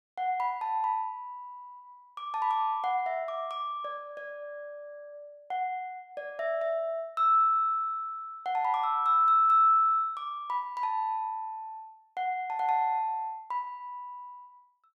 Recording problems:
none

